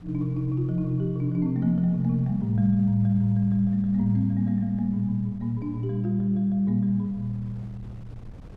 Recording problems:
wind noise; below 160 Hz, SNR 22 dB

